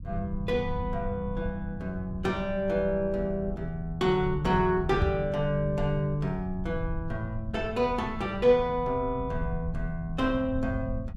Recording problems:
rumble; below 100 Hz, SNR 10 dB
knock on the microphone; at 5 s; peak +6 dB vs average level

